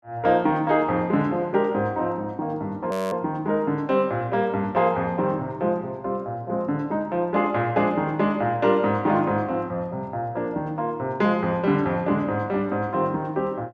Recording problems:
frozen audio; at 3 s

